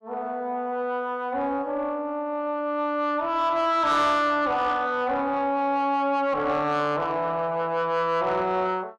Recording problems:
distorted audio; soft clipping, signal-to-distortion ratio 11 dB

